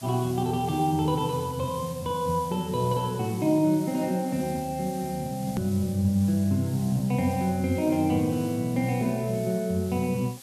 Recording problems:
hiss; slope +2 dB per octave, SNR 18 dB
click at an edit; at 5.5 s

